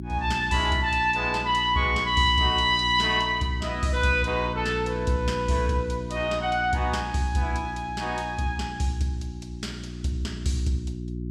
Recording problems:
hum; 60 Hz, harmonics up to 360 Hz, SNR 10 dB

